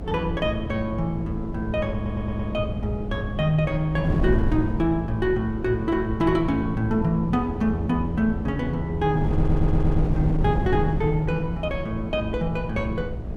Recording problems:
hum; 60 Hz, harmonics up to 720 Hz, SNR 14 dB
wind on the microphone; below 160 Hz, SNR 5 dB
stutter; at 2 s and at 9.5 s

